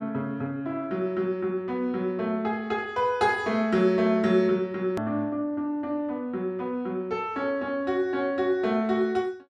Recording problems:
hard cut with a click; at 5 s

